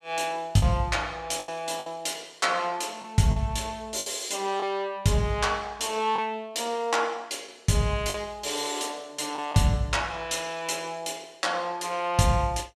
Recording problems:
packet loss; 4% of the sound replaced, filled with the last packet

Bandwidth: 13.5 kHz